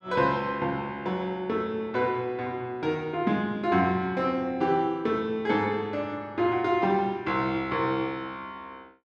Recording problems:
none

